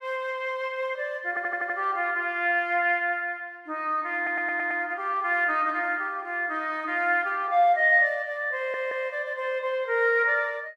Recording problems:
audio stuttering; at 1.5 s, at 4 s and at 8.5 s

